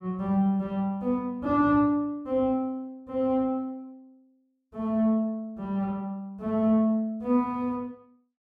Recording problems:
none

